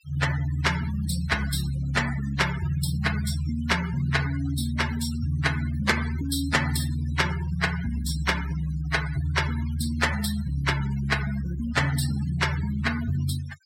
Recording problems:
denoising artefacts; signal-to-artefact ratio 12 dB

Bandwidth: 16 kHz